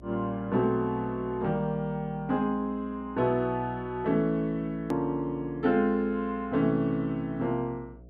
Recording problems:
hum; 60 Hz, harmonics up to 720 Hz, SNR 22 dB
edit click; at 5 s

